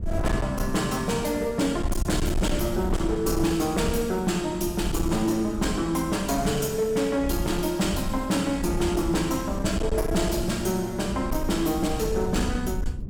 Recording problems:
distorted audio; hard clipping, signal-to-distortion ratio 11 dB
wind noise; below 110 Hz, SNR 8 dB

